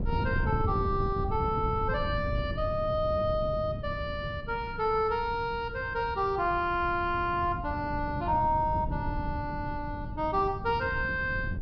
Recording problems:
treble cut off; nothing above 5.5 kHz
wind on the microphone; below 170 Hz, SNR 6 dB

